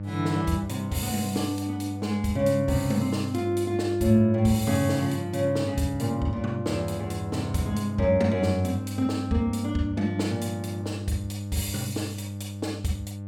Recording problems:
hum; 50 Hz, harmonics up to 600 Hz, SNR 7 dB

